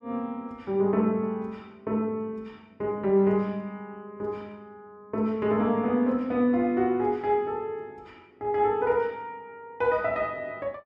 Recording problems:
none

